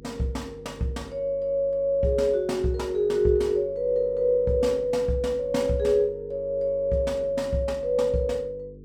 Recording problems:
electrical hum; 50 Hz, harmonics up to 450 Hz, SNR 21 dB

